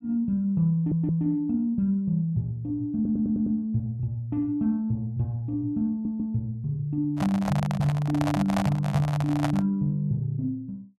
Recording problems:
stutter; at 0.5 s, at 3 s and at 6 s
microphone handling noise; from 7 to 9.5 s; peak +1 dB vs average level

